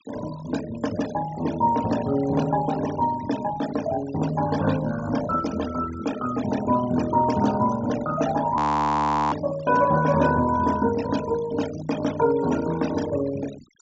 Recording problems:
treble cut off; nothing above 8 kHz
noise reduction artefacts; signal-to-artefact ratio 14 dB
audio freezing; at 8.5 s for 1 s

